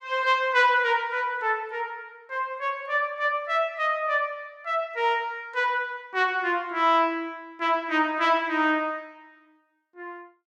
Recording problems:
none

